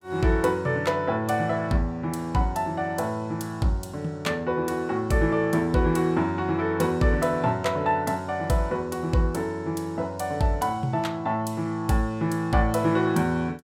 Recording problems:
none

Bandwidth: 17 kHz